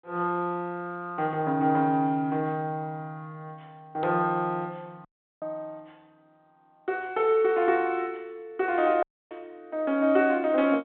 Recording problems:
phone line; 190 Hz to 3.7 kHz, G.726
dropout; at 5 s and at 9 s

